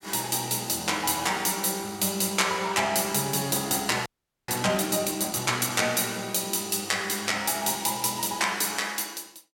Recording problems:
audio freezing; at 4 s

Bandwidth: 17 kHz